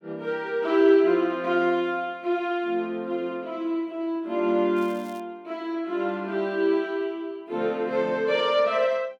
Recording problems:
crackle; at 5 s; loose cable, SNR 28 dB

